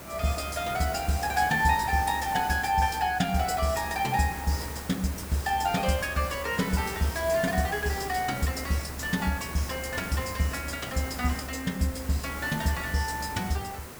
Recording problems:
background hiss; slope -5 dB per octave, SNR 10 dB

